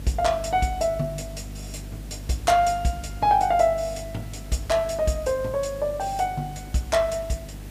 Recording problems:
hum; 50 Hz, harmonics up to 300 Hz, SNR 15 dB
hiss; SNR 20 dB

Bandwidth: 15 kHz